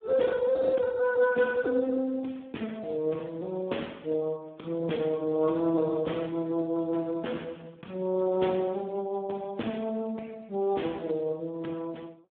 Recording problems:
phone line; 190 Hz to 3.6 kHz, Speex

